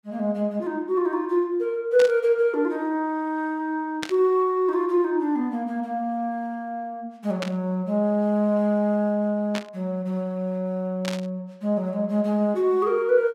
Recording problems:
burst of static; 5 times, first at 2 s; peak -2 dB vs average level

